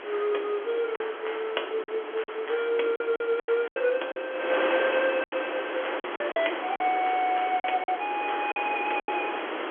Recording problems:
phone line; 300 Hz to 3.4 kHz, G.711
wind on the microphone; below 1.9 kHz, SNR 5 dB
lost packets; 9% of the sound replaced, filled with silence

